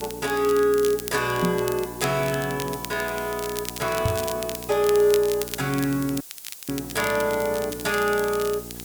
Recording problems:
hum; 60 Hz, harmonics up to 1.3 kHz, SNR 16 dB
background hiss; SNR 15 dB
crackling; vinyl, SNR 12 dB
microphone bump; at 1.5 s and at 4 s; peak +2 dB vs average level
dropout; at 6 s

